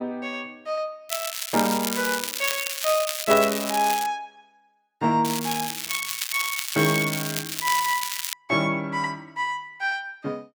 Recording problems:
crackle; from 1 to 4 s and from 5.5 to 8.5 s; loose cable, SNR 3 dB

